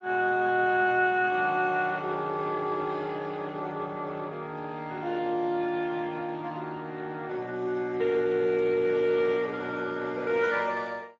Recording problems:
lossy compression; Speex, log-spectral distance 3 dB, nothing above 7.3 kHz

